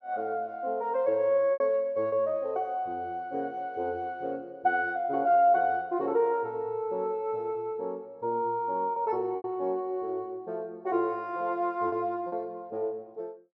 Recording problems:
packet loss; 2% of the sound replaced, filled with repeated pitch periods

